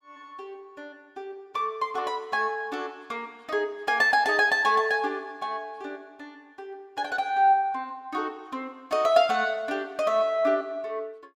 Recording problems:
none

